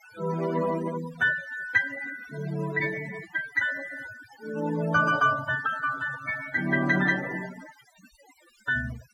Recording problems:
noise reduction artefacts; signal-to-artefact ratio 13 dB

